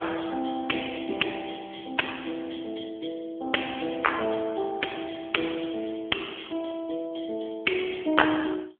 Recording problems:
telephone audio; 240 Hz to 3.4 kHz, AMR-NB

